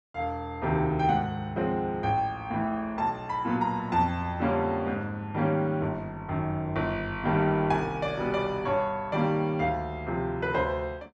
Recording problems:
none

